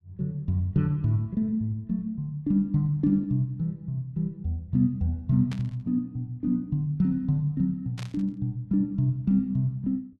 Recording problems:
static burst; at 5.5 s and at 8 s; peak -10 dB vs average level

